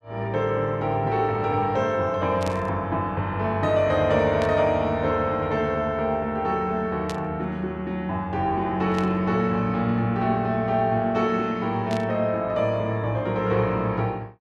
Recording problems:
burst of static; 5 times, first at 2.5 s; peak -7 dB vs average level

